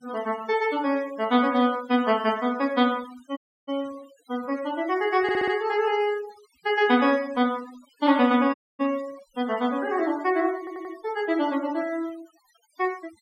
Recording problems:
noise reduction artefacts; signal-to-artefact ratio 20 dB
audio cutting out; at 3.5 s and at 8.5 s
stutter; at 5 s and at 11 s

